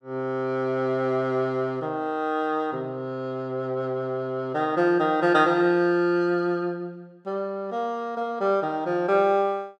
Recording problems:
none

